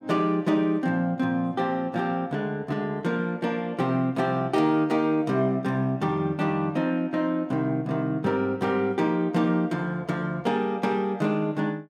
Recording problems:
none

